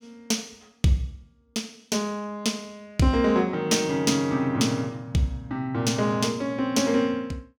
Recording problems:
none

